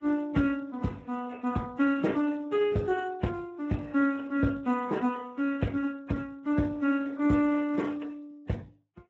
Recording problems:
lossy codec; MP3, then Speex, log-spectral distance 5 dB

